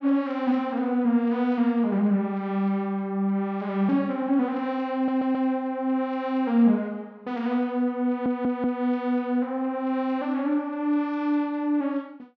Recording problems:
stutter; at 5 s and at 8 s

